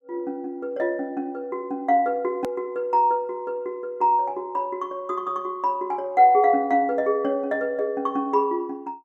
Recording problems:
hard cut with a click; at 2.5 s

